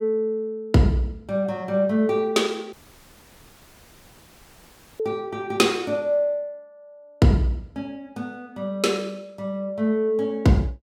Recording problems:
audio cutting out; at 2.5 s for 2.5 s

